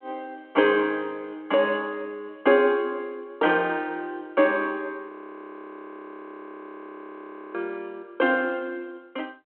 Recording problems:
phone line; 220 Hz to 3.3 kHz, G.726
frozen audio; at 5 s for 2.5 s

